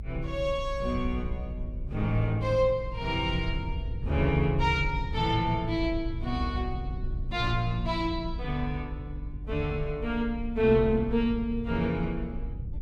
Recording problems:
rumble; below 78 Hz, SNR 8 dB

